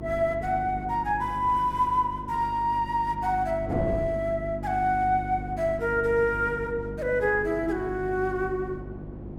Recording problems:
hum; 50 Hz, harmonics up to 350 Hz, SNR 12 dB
wind on the microphone; below 440 Hz, SNR 15 dB

